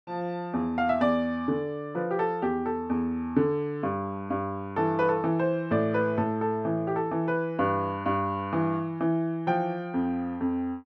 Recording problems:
none

